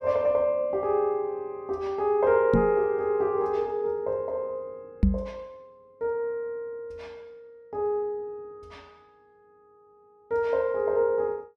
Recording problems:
microphone bump; at 2.5 s and at 5 s; peak +9 dB vs average level

